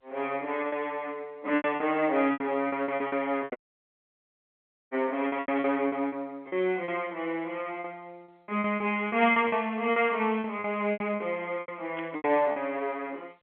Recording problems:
phone line; 240 Hz to 3.9 kHz, G.711
packet loss; 14% of the sound replaced, filled with repeated pitch periods
audio cutting out; at 3.5 s for 1.5 s
static burst; at 12 s; peak -10 dB vs average level

